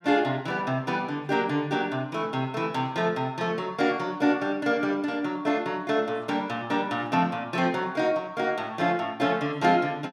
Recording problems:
none

